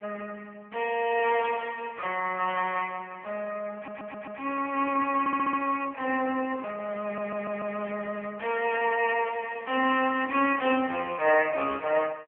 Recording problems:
phone line; 320 Hz to 3.1 kHz, AMR-NB
stutter; at 4 s, at 5 s and at 7 s

